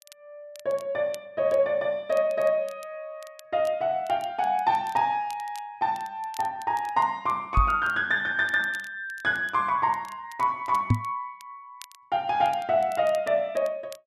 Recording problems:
crackle; vinyl, SNR 25 dB
knock on the microphone; at 7.5 s and at 11 s; peak +8 dB vs average level

